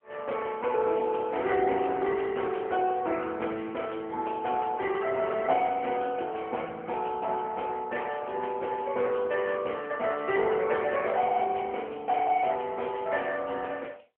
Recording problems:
telephone audio; 300 Hz to 3.2 kHz, AMR-NB

